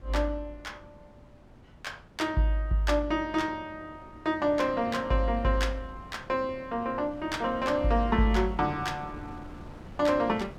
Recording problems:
wind noise; below 400 Hz, SNR 20 dB

